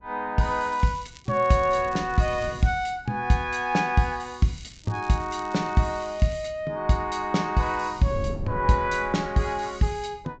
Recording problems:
treble cut off; nothing above 8 kHz
wind noise; below 180 Hz, SNR 15 dB
crackle; from 0.5 to 2.5 s and from 4.5 to 6.5 s; loose cable, SNR 26 dB

